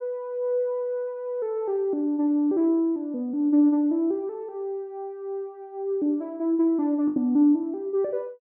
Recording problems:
lost packets; 1% of the sound replaced, filled with the last packet

